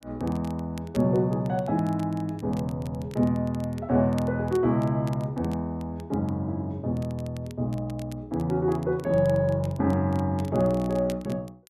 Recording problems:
crackling; vinyl, SNR 25 dB

